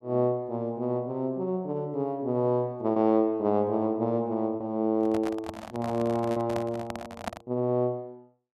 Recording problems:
lost packets; 1.5% of the sound replaced, filled with repeated pitch periods
microphone handling noise; from 5 to 7.5 s; peak -1 dB vs average level

